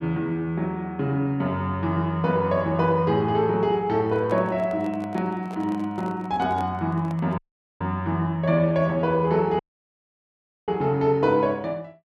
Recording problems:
handling noise; from 4 to 8 s; peak -11 dB vs average level
audio cutting out; at 7.5 s and at 9.5 s for 1 s

